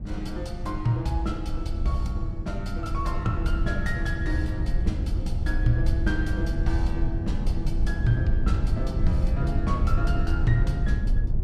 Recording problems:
rumble; below 92 Hz, SNR -2 dB

